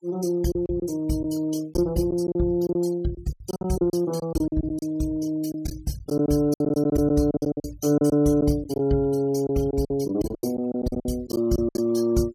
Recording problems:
noise reduction artefacts; signal-to-artefact ratio 22 dB
lost packets; 13% of the sound replaced, filled with silence

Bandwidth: 17 kHz